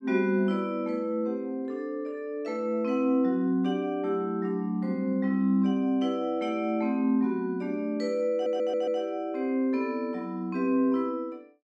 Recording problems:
stutter; at 8.5 s

